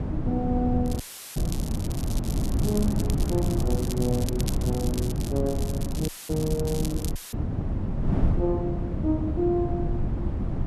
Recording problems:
wind on the microphone; below 200 Hz, SNR -1 dB
crackle; from 1 to 7 s; loose cable, SNR 10 dB
audio cutting out; at 1 s, at 6 s and at 7 s; filled with static

